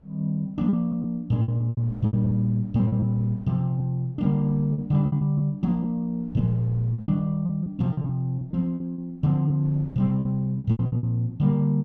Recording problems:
wind noise; below 290 Hz, SNR 26 dB
lost packets; 12% of the sound replaced, filled with repeated pitch periods

